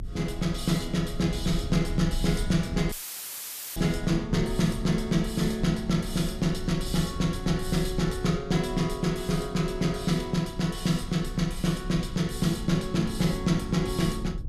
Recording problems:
low-frequency rumble; below 80 Hz, strongest tone 30 Hz, SNR 11 dB
dropout; at 3 s for 1 s; filled with static

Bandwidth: 14.5 kHz